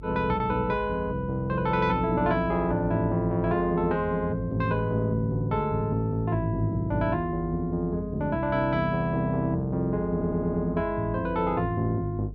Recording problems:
hum; 50 Hz, harmonics up to 450 Hz, SNR 15 dB
stutter; at 10 s

